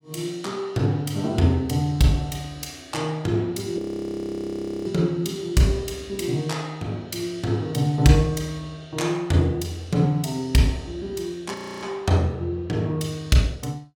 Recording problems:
frozen audio; at 4 s for 1 s and at 12 s

